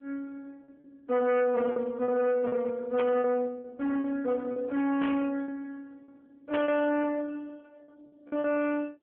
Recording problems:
phone line; 320 Hz to 3.2 kHz, AMR-NB
distorted audio; hard clipping, signal-to-distortion ratio 10 dB
packet loss; 7% of the sound replaced, filled with repeated pitch periods
burst of static; at 3 s, at 5 s and at 6.5 s; peak -4 dB vs average level

